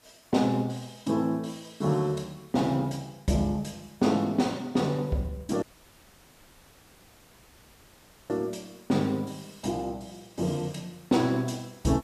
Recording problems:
background hiss; slope -2 dB per octave, SNR 29 dB
audio cutting out; at 5.5 s for 2.5 s

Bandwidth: 14.5 kHz